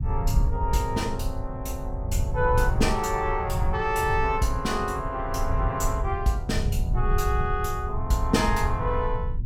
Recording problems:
low-frequency rumble; below 96 Hz, SNR 2 dB

